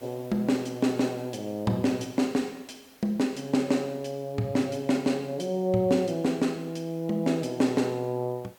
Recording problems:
background hiss; SNR 27 dB

